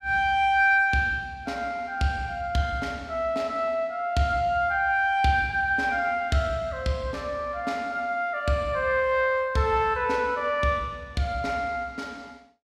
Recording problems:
none

